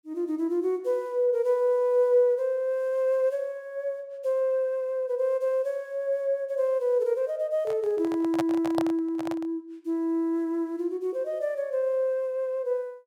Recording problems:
microphone handling noise; from 7.5 to 9.5 s; peak 0 dB vs average level

